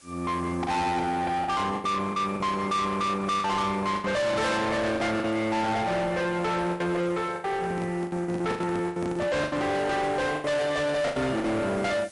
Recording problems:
lossy compression; MP3, log-spectral distance 3 dB, nothing above 11 kHz
distorted audio; soft clipping, signal-to-distortion ratio 7 dB
background hiss; slope 0 dB per octave, SNR 25 dB
lost packets; 10% of the sound replaced, filled with the last packet
handling noise; from 7.5 to 10 s; peak -1 dB vs average level

